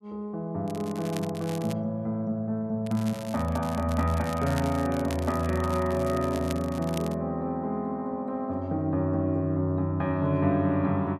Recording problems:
crackle; from 0.5 to 1.5 s and from 3 to 7 s; loose cable, SNR 16 dB

